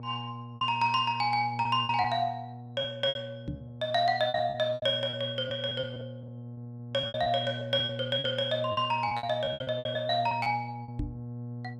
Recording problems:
hum; 60 Hz, harmonics up to 840 Hz, SNR 12 dB
lost packets; 14% of the sound replaced, filled with repeated pitch periods
microphone bump; at 3.5 s and at 11 s; peak -2 dB vs average level

